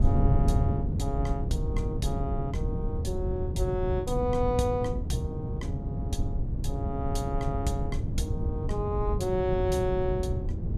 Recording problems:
wind noise; below 140 Hz, SNR -1 dB

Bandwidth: 14.5 kHz